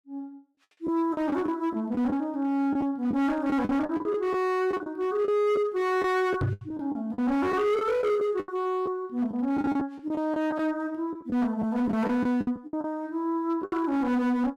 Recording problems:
distorted audio; hard clipping, signal-to-distortion ratio 10 dB
lost packets; 10% of the sound replaced, filled with the last packet
microphone thump; at 6.5 s; peak +3 dB vs average level

